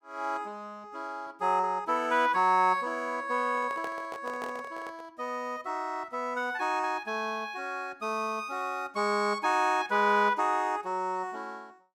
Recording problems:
microphone handling noise; from 3.5 to 5 s; peak -6 dB vs average level

